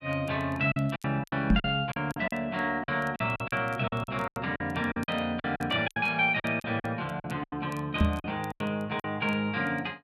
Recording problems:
crackle; vinyl, SNR 29 dB
packet loss; 14% of the sound replaced, filled with silence
knock on the microphone; at 1.5 s and at 8 s; peak +8 dB vs average level

